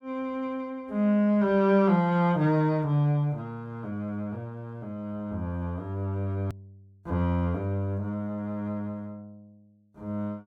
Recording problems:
click at an edit; at 6.5 s

